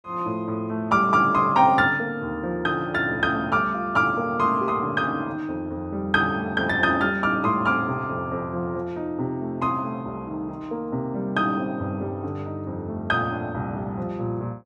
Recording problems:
none

